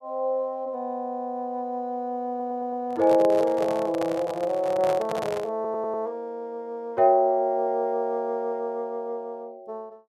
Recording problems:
stutter; at 2.5 s and at 5.5 s
handling noise; from 3 to 5.5 s; peak -2 dB vs average level

